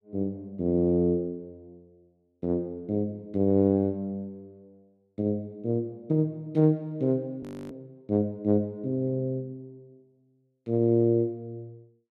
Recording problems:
frozen audio; at 7.5 s

